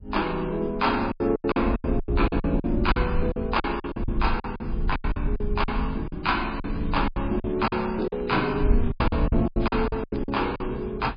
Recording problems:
codec artefacts; MP3, log-spectral distance 3 dB
wind noise; below 66 Hz, SNR 6 dB
packet loss; 16% of the sound replaced, filled with silence
crackling; from 6.5 to 10 s; loose cable, SNR 26 dB

